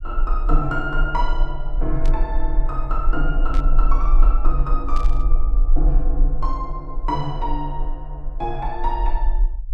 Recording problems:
rumble; below 36 Hz, strongest tone 22 Hz, SNR -3 dB
static burst; at 2 s, at 3.5 s and at 5 s; peak -8 dB vs average level

